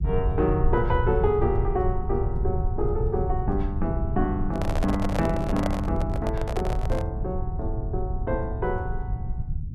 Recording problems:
rumble; below 98 Hz, SNR 1 dB
handling noise; from 4.5 to 7 s; peak +3 dB vs average level

